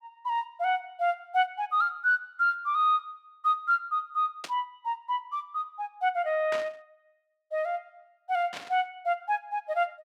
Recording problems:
static burst; at 4.5 s, at 6.5 s and at 8.5 s; peak -4 dB vs average level

